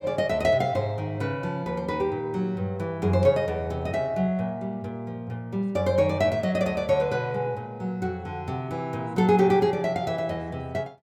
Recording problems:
none

